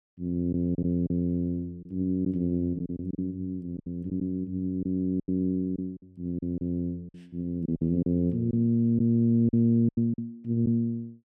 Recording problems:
packet loss; 8% of the sound replaced, filled with silence

